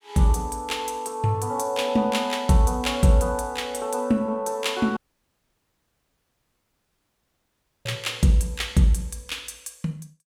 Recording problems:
audio cutting out; at 5 s for 3 s

